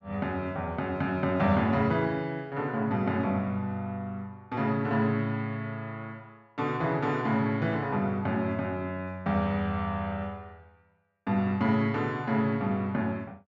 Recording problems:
none

